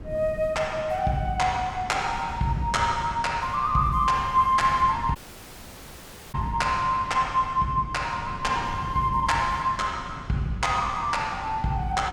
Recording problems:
wind noise; below 220 Hz, SNR 14 dB
audio cutting out; at 5 s for 1 s

